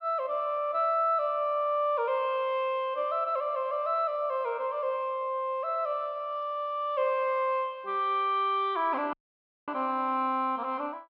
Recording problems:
treble cut off; nothing above 5.5 kHz
dropout; at 9 s for 0.5 s

